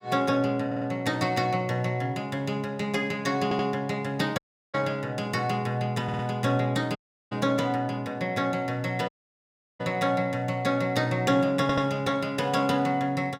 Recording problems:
stutter; 4 times, first at 0.5 s
dropout; at 4.5 s, at 7 s and at 9 s for 0.5 s

